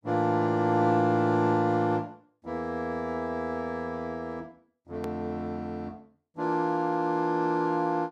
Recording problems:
hard cut with a click; at 5 s

